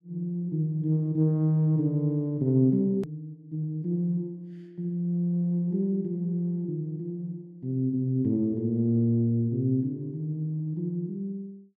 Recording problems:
edit click; at 3 s

